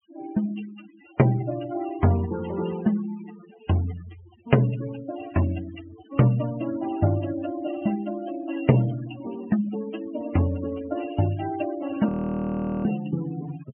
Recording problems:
treble missing; nothing above 3.1 kHz
denoising artefacts; signal-to-artefact ratio 15 dB
frozen audio; at 12 s for 1 s

